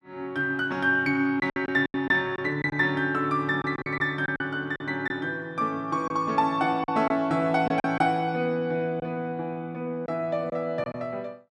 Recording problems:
lost packets; 7% of the sound replaced, filled with silence

